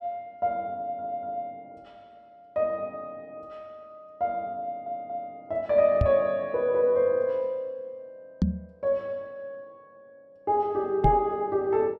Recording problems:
stutter; at 1 s and at 4.5 s
knock on the microphone; at 6 s, at 8.5 s and at 11 s; peak +7 dB vs average level

